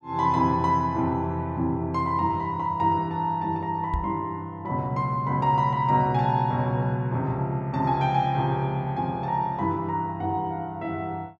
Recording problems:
microphone bump; at 4 s; peak +1 dB vs average level

